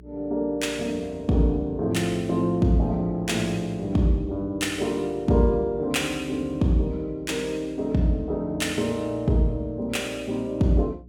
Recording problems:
hum; 60 Hz, harmonics up to 420 Hz, SNR 22 dB

